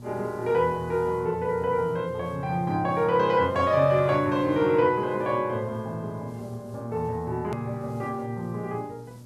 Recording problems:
electrical hum; 60 Hz, harmonics up to 600 Hz, SNR 18 dB
hiss; SNR 29 dB
click at an edit; at 7.5 s

